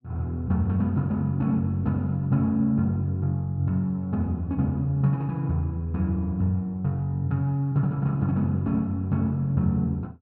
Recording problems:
none

